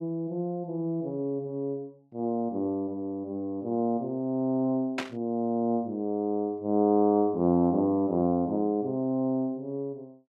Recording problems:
burst of static; at 5 s; peak +1 dB vs average level

